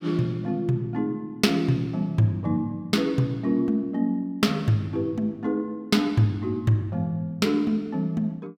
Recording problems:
none

